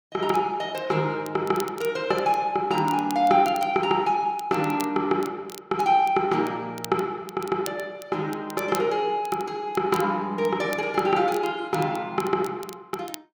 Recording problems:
crackle; vinyl, SNR 19 dB

